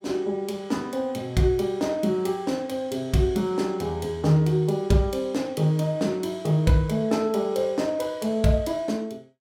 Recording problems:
none

